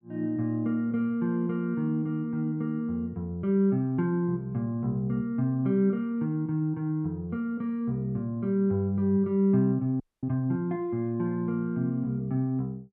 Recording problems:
audio freezing; at 10 s

